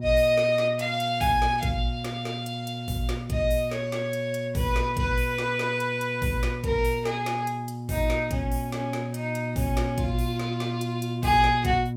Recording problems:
electrical hum; 60 Hz, harmonics up to 720 Hz, SNR 7 dB

